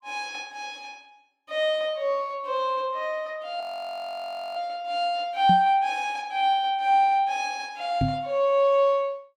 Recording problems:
frozen audio; at 3.5 s for 1 s
knock on the microphone; at 5.5 s and at 8 s; peak +3 dB vs average level

